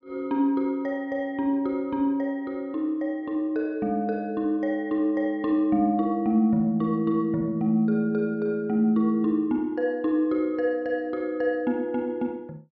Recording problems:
none

